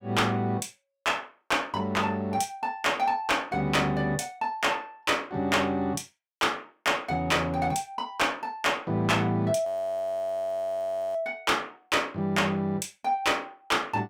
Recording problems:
distortion; soft clipping, signal-to-distortion ratio 11 dB
audio freezing; at 9.5 s for 1.5 s

